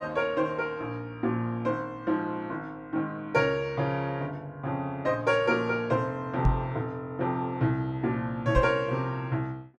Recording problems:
microphone bump; at 6.5 s and at 8.5 s; peak +6 dB vs average level

